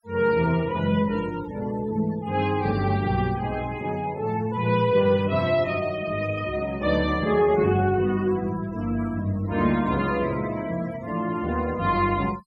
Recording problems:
noise reduction artefacts; signal-to-artefact ratio 21 dB

